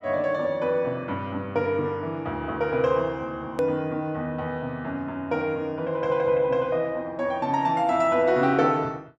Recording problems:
edit click; at 3.5 s

